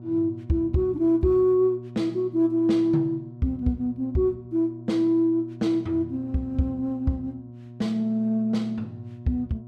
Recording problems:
mains hum; 60 Hz, harmonics up to 720 Hz, SNR 16 dB

